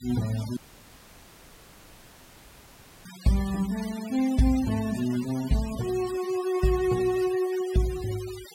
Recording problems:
denoising artefacts; signal-to-artefact ratio 15 dB
dropout; at 0.5 s for 2.5 s

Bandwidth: 16 kHz